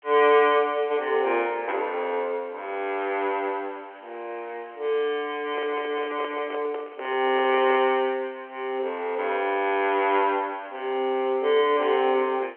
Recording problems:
phone line; 320 Hz to 3.2 kHz, G.711
background hiss; SNR 30 dB
handling noise; from 5.5 to 8 s; peak -6 dB vs average level

